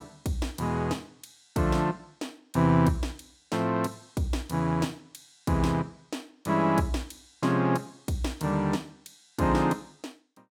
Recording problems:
none

